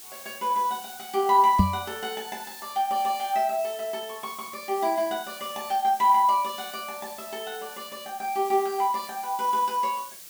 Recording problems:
background hiss; SNR 15 dB
knock on the microphone; at 1.5 s; peak +9 dB vs average level

